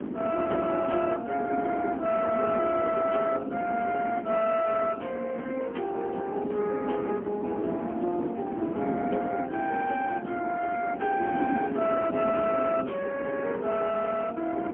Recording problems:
phone line; 240 Hz to 3.1 kHz, AMR-NB, then MP3
wind noise; below 400 Hz, SNR 7 dB

